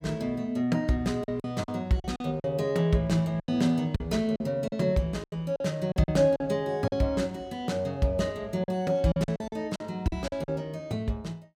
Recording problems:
packet loss; 9% of the sound replaced, filled with silence

